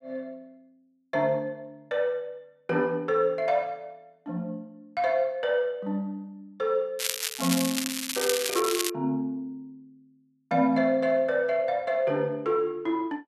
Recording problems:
crackle; from 7 to 9 s; loose cable, SNR 2 dB

